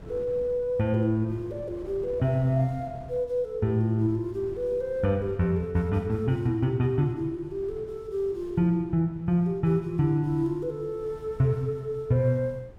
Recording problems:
wind on the microphone; below 260 Hz, SNR 21 dB

